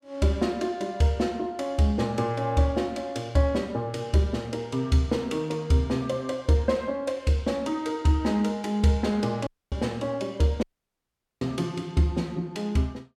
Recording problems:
audio cutting out; at 9.5 s and at 11 s for 1 s

